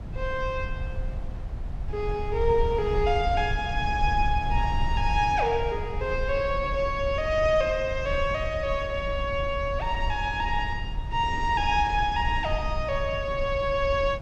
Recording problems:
low-frequency rumble; below 80 Hz, SNR 7 dB

